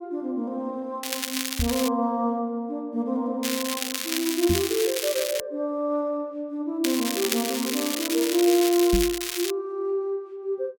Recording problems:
crackling; at 1 s, from 3.5 to 5.5 s and from 7 to 9.5 s; loose cable, SNR 3 dB
knock on the microphone; at 1.5 s, at 4.5 s and at 9 s; peak +4 dB vs average level

